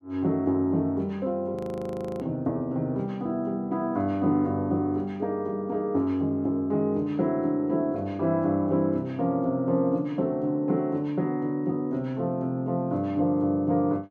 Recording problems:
frozen audio; at 1.5 s for 0.5 s

